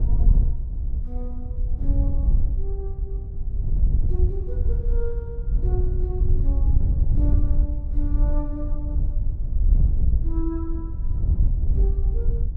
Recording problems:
wind on the microphone; below 66 Hz, SNR -12 dB

